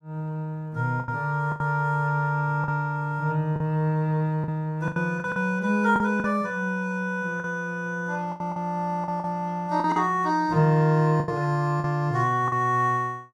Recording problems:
lost packets; 8% of the sound replaced, filled with the last packet

